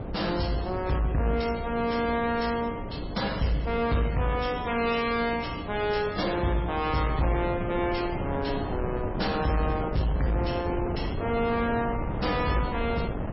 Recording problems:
codec artefacts; MP3, log-spectral distance 4 dB, nothing above 5.5 kHz
distorted audio; soft clipping, signal-to-distortion ratio 11 dB
mains hum; 60 Hz, harmonics up to 600 Hz, SNR 14 dB
wind noise; below 470 Hz, SNR 7 dB

